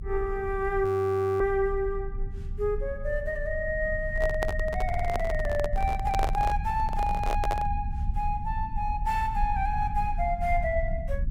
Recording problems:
low-frequency rumble; below 70 Hz, strongest tone 30 Hz, SNR 5 dB
frozen audio; at 1 s for 0.5 s
microphone handling noise; from 4 to 7.5 s; peak +2 dB vs average level
audio stuttering; at 5 s

